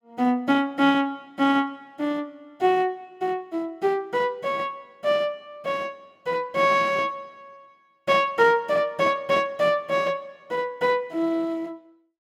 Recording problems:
none

